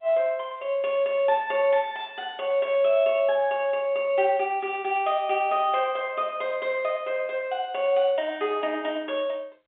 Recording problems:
telephone audio; 260 Hz to 3.7 kHz, G.711

